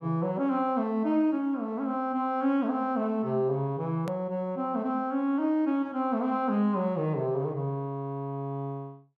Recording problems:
edit click; at 4 s

